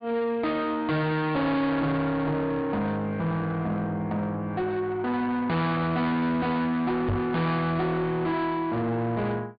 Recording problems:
treble missing; nothing above 4.8 kHz
distortion; soft clipping, signal-to-distortion ratio 8 dB
knock on the microphone; at 7 s; peak +3 dB vs average level

